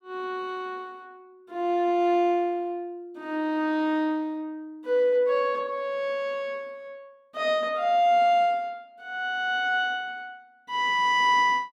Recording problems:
none

